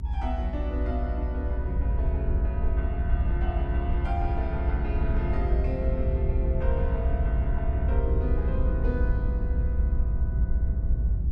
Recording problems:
low-frequency rumble; below 70 Hz, SNR -7 dB

